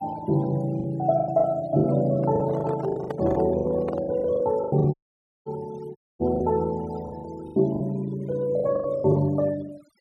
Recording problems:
noise reduction artefacts; signal-to-artefact ratio 22 dB
lost packets; 13% of the sound replaced, filled with the last packet
handling noise; from 2 to 4 s; peak -5 dB vs average level
dropout; at 5 s for 0.5 s and at 6 s

